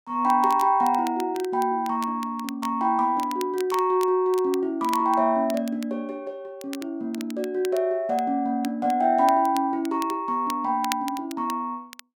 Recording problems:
crackle; vinyl, SNR 18 dB

